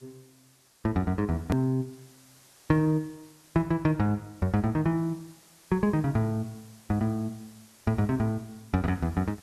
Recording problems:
background hiss; slope -1 dB per octave, SNR 27 dB
click at an edit; at 1.5 s

